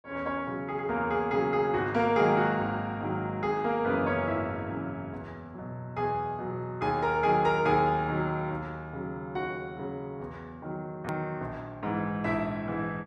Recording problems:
hard cut with a click; at 11 s

